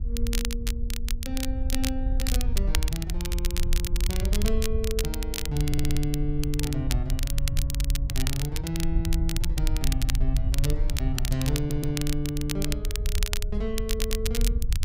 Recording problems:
wind on the microphone; below 60 Hz, SNR -2 dB
crackle; vinyl, SNR 3 dB
stutter; at 5.5 s, at 12 s and at 14 s

